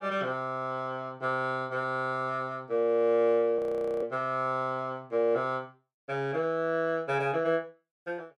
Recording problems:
audio freezing; at 3.5 s

